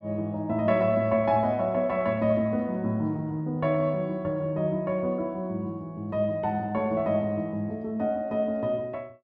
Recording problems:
none

